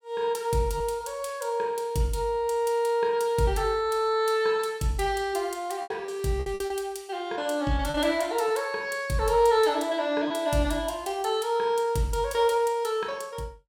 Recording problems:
lost packets; 3% of the sound replaced, filled with repeated pitch periods

